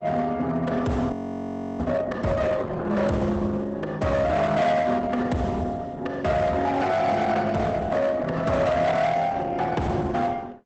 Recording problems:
lossy codec; Opus, log-spectral distance 3 dB, nothing above 8 kHz
distorted audio; hard clipping, signal-to-distortion ratio 10 dB
frozen audio; at 1 s for 0.5 s

